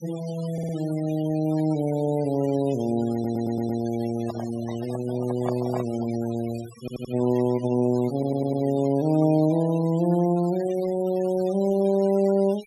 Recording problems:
noise reduction artefacts; signal-to-artefact ratio 19 dB
stutter; 4 times, first at 0.5 s
microphone handling noise; from 4 to 6 s; peak -2 dB vs average level

